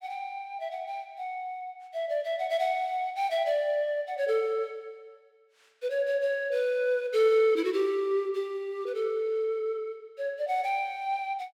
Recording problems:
none

